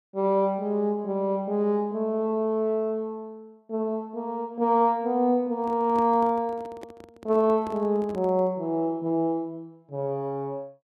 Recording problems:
handling noise; from 5.5 to 8.5 s; peak -10 dB vs average level

